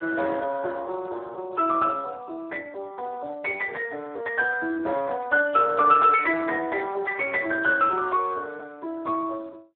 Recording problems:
telephone audio; 300 Hz to 3.7 kHz, Speex

